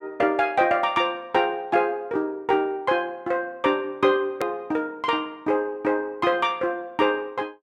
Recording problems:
hard cut with a click; at 4.5 s

